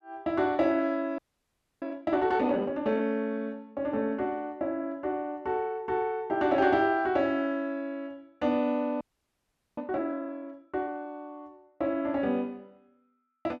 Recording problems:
audio freezing; at 1 s for 0.5 s and at 9 s for 1 s

